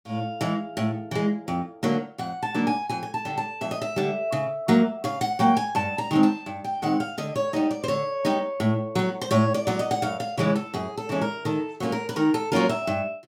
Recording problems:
none

